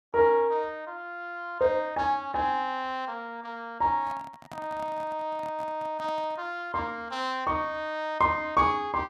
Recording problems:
handling noise; from 4 to 6.5 s; peak -9 dB vs average level

